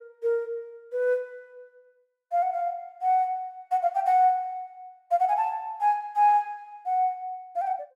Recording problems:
none

